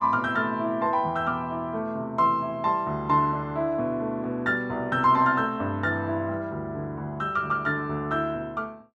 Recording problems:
none

